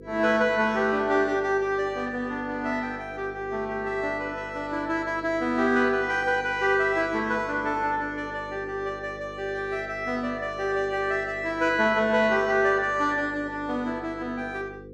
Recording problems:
hum; 50 Hz, harmonics up to 500 Hz, SNR 17 dB

